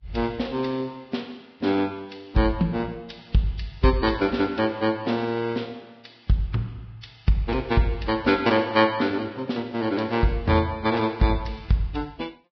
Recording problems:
lossy compression; Vorbis, log-spectral distance 3 dB, nothing above 5.2 kHz

